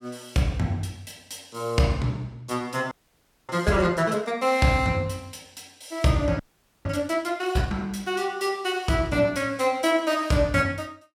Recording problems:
frozen audio; at 3 s for 0.5 s and at 6.5 s

